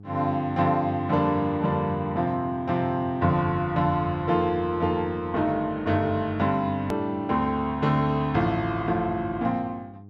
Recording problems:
hum; 50 Hz, harmonics up to 700 Hz, SNR 20 dB
edit click; at 7 s

